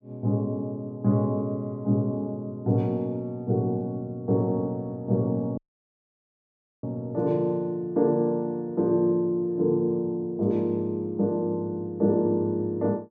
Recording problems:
audio cutting out; at 5.5 s for 1.5 s

